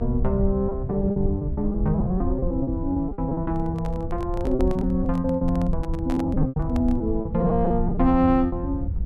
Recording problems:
hum; 50 Hz, harmonics up to 1 kHz, SNR 20 dB
low-frequency rumble; below 88 Hz, SNR 6 dB
packet loss; 14% of the sound replaced, filled with repeated pitch periods
microphone handling noise; from 3.5 to 7 s; peak -7 dB vs average level

